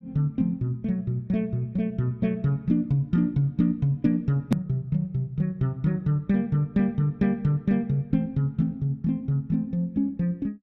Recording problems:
click at an edit; at 4.5 s

